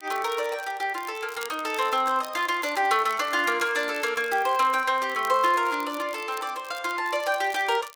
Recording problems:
crackle; vinyl, SNR 20 dB

